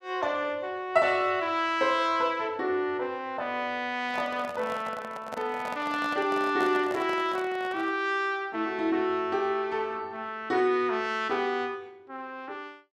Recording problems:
handling noise; from 4 to 8 s; peak -5 dB vs average level

